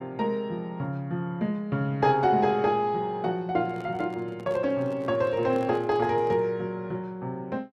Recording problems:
microphone handling noise; from 3.5 to 6.5 s; peak -10 dB vs average level

